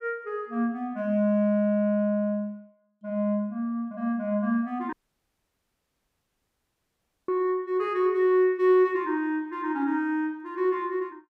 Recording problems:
audio cutting out; at 5 s for 2.5 s

